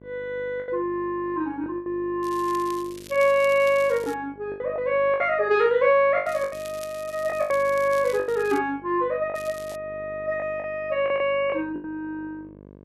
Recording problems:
hum; 50 Hz, harmonics up to 1.1 kHz, SNR 23 dB
packet loss; 8% of the sound replaced, filled with the last packet
crackling; from 2 to 4 s, from 6 to 8.5 s and at 9.5 s; loose cable, SNR 20 dB

